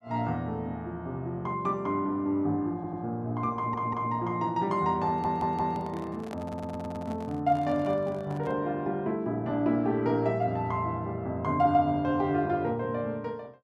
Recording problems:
audio stuttering; 4 times, first at 2.5 s
handling noise; from 5 to 8.5 s; peak -8 dB vs average level

